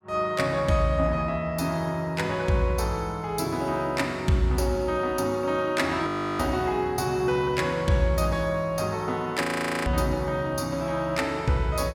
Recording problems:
frozen audio; at 6 s and at 9.5 s

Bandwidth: 17.5 kHz